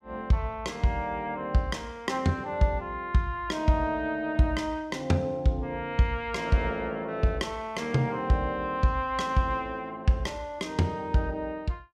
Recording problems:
none

